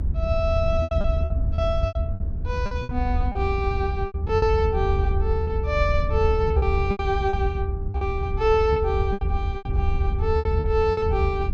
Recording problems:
rumble; below 80 Hz, SNR 0 dB
lost packets; 12% of the sound replaced, filled with repeated pitch periods

